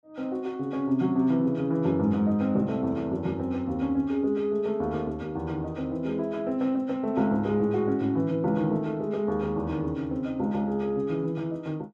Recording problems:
none

